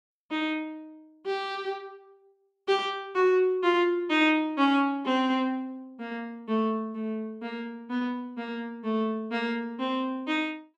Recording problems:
none

